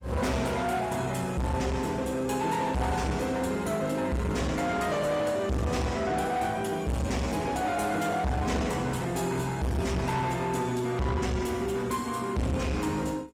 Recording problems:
lossy codec; Opus, log-spectral distance 4 dB, nothing above 17.7 kHz
distortion; soft clipping, signal-to-distortion ratio 6 dB

